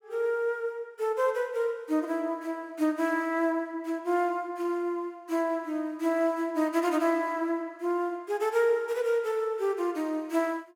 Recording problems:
none

